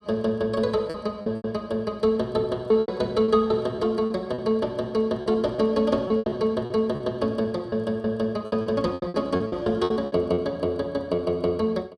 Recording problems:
lost packets; 11% of the sound replaced, filled with repeated pitch periods

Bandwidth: 14 kHz